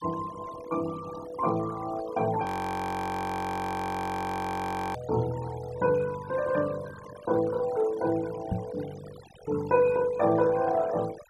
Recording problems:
noise reduction artefacts; signal-to-artefact ratio 16 dB
audio freezing; at 2.5 s for 2.5 s
knock on the microphone; at 8.5 s; peak +3 dB vs average level

